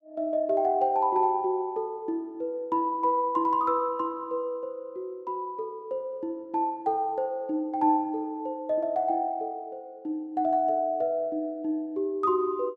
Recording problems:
none

